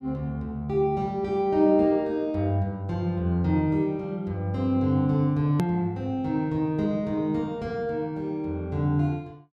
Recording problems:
hard cut with a click; at 5.5 s

